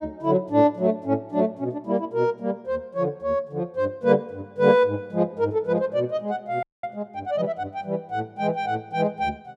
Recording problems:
audio freezing; at 6.5 s

